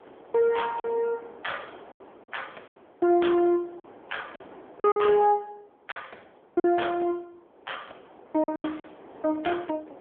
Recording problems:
telephone audio; 190 Hz to 3.4 kHz, AMR-NB
wind noise; below 860 Hz, SNR 23 dB
packet loss; 7% of the sound replaced, filled with silence

